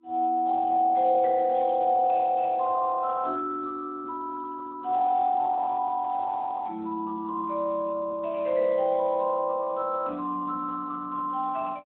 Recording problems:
phone line; 260 Hz to 2.3 kHz, Speex

